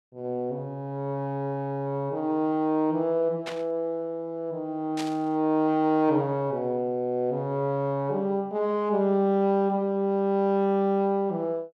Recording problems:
static burst; at 3.5 s and at 5 s; peak -5 dB vs average level

